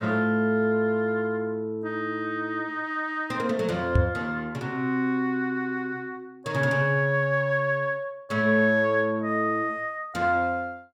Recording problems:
microphone thump; at 4 s; peak +7 dB vs average level

